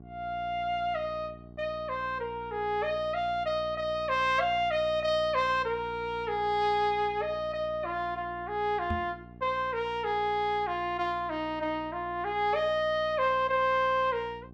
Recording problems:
hum; 60 Hz, harmonics up to 840 Hz, SNR 19 dB
microphone bump; at 9 s; peak 0 dB vs average level

